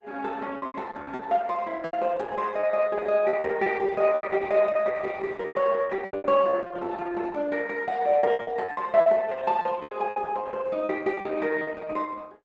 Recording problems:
lossy compression; Opus, log-spectral distance 3 dB, nothing above 7.6 kHz
packet loss; 14% of the sound replaced, filled with repeated pitch periods

